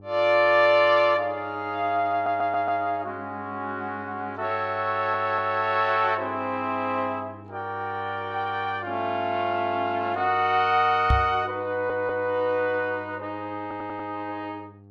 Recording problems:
hum; 50 Hz, harmonics up to 900 Hz, SNR 21 dB
audio stuttering; 4 times, first at 2 s
microphone thump; at 11 s; peak +5 dB vs average level

